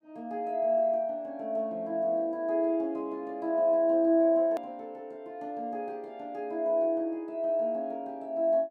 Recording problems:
edit click; at 4.5 s

